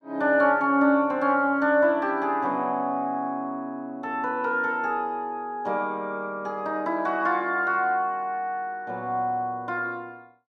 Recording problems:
none

